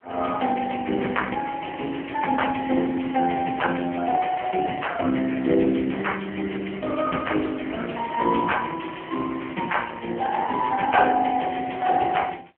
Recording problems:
phone line; 220 Hz to 3.2 kHz, AMR-NB

